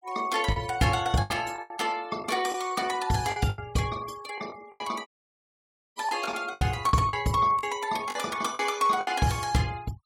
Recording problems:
denoising artefacts; signal-to-artefact ratio 20 dB
lost packets; 10% of the sound replaced, filled with the last packet
dropout; at 5 s for 1 s

